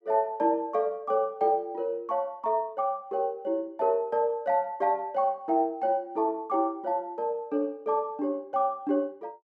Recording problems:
none

